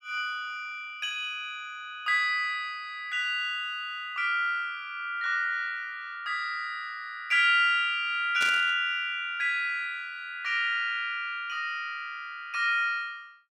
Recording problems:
burst of static; at 8.5 s; peak -2 dB vs average level

